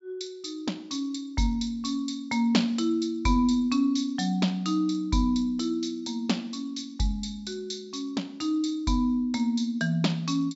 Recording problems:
treble cut off; nothing above 7.5 kHz

